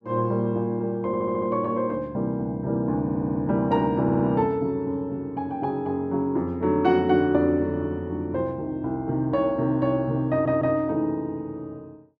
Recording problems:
audio stuttering; 4 times, first at 1 s

